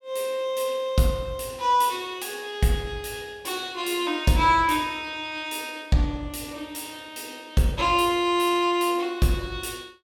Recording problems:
none

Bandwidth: 17.5 kHz